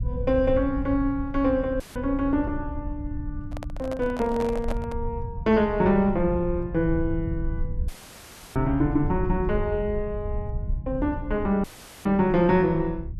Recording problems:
low-frequency rumble; below 90 Hz, SNR 9 dB
audio cutting out; at 2 s, at 8 s for 0.5 s and at 12 s; filled with static
handling noise; from 3.5 to 5 s; peak -4 dB vs average level

